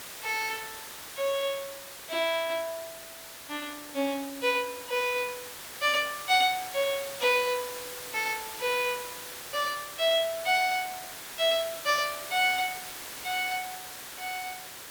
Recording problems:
background hiss; slope -1 dB per octave, SNR 10 dB

